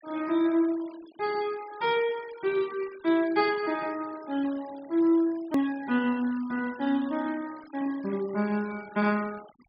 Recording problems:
treble missing; nothing above 5.5 kHz
denoising artefacts; signal-to-artefact ratio 21 dB
hard cut with a click; at 5.5 s

